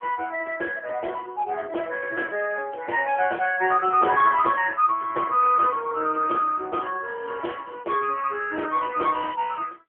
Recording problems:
phone line; 280 Hz to 2.9 kHz, AMR-NB

